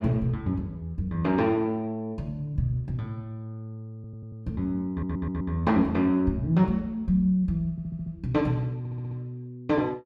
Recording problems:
stutter; 4 times, first at 4 s

